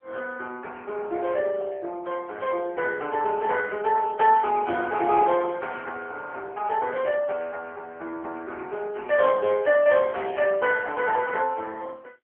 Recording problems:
telephone audio; 300 Hz to 2.6 kHz, AMR-NB

